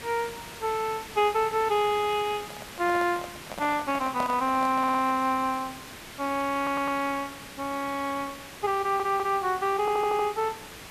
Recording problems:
background hiss; slope -2 dB per octave, SNR 14 dB
microphone handling noise; from 2.5 to 5 s; peak -2 dB vs average level
stutter; 4 times, first at 5 s

